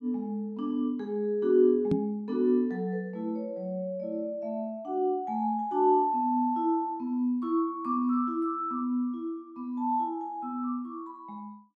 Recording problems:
microphone thump; at 2 s; peak +5 dB vs average level

